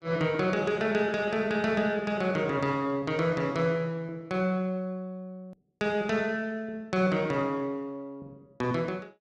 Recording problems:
hard cut with a click; at 5.5 s

